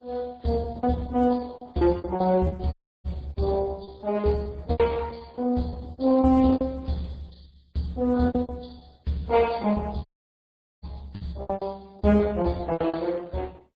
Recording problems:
codec artefacts; MP3, then Opus, log-spectral distance 3 dB
packet loss; 16% of the sound replaced, filled with repeated pitch periods
dropout; at 2.5 s and at 10 s for 1 s

